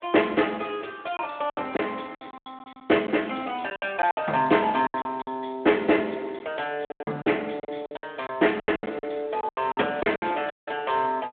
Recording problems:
telephone audio; 220 Hz to 3.5 kHz, Speex
lost packets; 13% of the sound replaced, filled with silence
dropout; at 11 s

